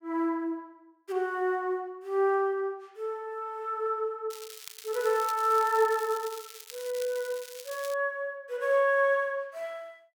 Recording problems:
crackle; from 4.5 to 8 s; loose cable, SNR 14 dB

